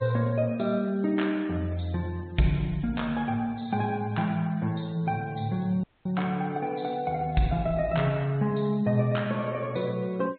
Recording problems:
treble cut off; nothing above 4 kHz
denoising artefacts; signal-to-artefact ratio 27 dB
audio cutting out; at 6 s

